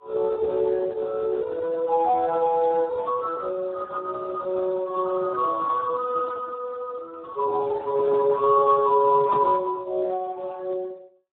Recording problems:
phone line; 340 Hz to 2 kHz, Speex

